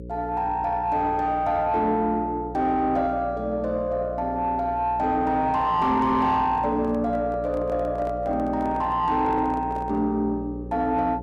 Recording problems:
distorted audio; soft clipping, signal-to-distortion ratio 11 dB
hum; 60 Hz, harmonics up to 540 Hz, SNR 13 dB
handling noise; from 6.5 to 10 s; peak -8 dB vs average level

